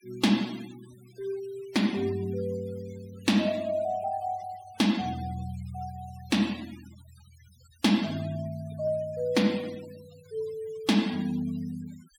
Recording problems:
noise reduction artefacts; signal-to-artefact ratio 20 dB

